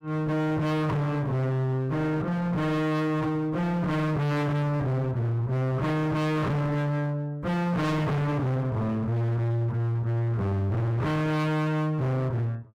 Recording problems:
distortion; hard clipping, uneven, signal-to-distortion ratio 6 dB

